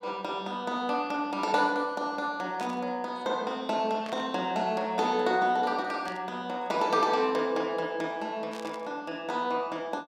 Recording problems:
burst of static; 4 times, first at 2.5 s; peak -9 dB vs average level

